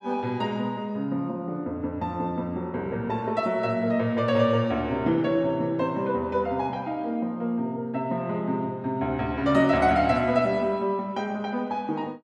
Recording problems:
none

